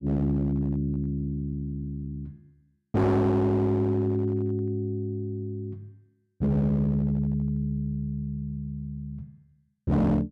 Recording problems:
distorted audio; hard clipping, signal-to-distortion ratio 8 dB

